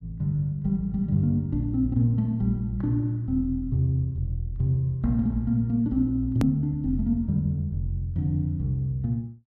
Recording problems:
hard cut with a click; at 6.5 s

